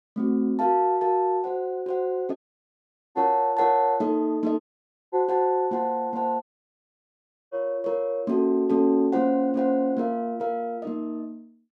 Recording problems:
audio cutting out; at 2.5 s for 1 s, at 4.5 s for 0.5 s and at 6.5 s for 1 s

